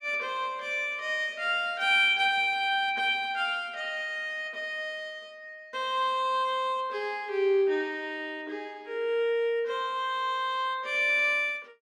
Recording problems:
none

